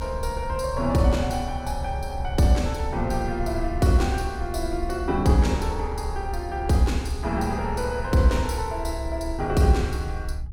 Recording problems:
rumble; below 68 Hz, SNR 8 dB

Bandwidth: 17 kHz